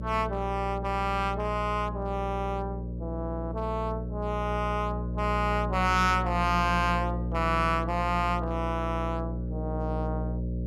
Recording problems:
distortion; hard clipping, uneven, signal-to-distortion ratio 6 dB
hum; 60 Hz, harmonics up to 600 Hz, SNR 4 dB

